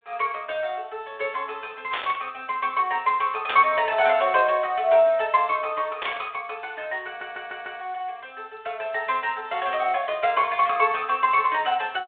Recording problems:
telephone audio; 320 Hz to 3.7 kHz, G.726
burst of static; at 2 s, at 3.5 s and at 6 s; peak -1 dB vs average level
stutter; at 7 s

